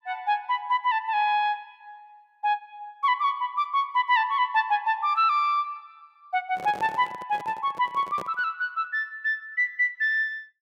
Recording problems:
handling noise; from 6.5 to 8.5 s; peak -9 dB vs average level

